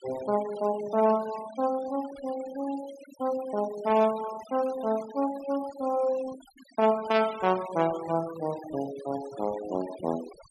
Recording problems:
denoising artefacts; signal-to-artefact ratio 17 dB

